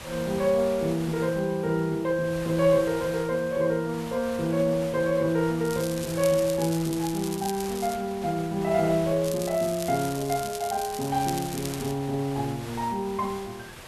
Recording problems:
hiss; slope -3 dB per octave, SNR 15 dB
crackle; from 5.5 to 8 s and from 9 to 12 s; loose cable, SNR 12 dB

